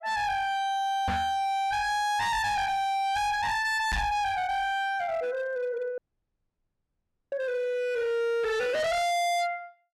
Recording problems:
distortion; hard clipping, signal-to-distortion ratio 6 dB
knock on the microphone; at 1 s and at 4 s; peak +2 dB vs average level
dropout; at 6 s for 1.5 s

